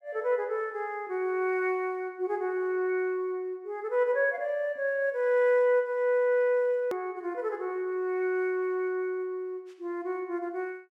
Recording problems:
edit click; at 7 s

